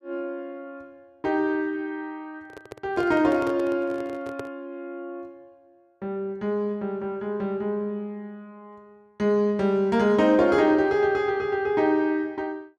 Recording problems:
handling noise; from 2.5 to 4.5 s; peak -6 dB vs average level

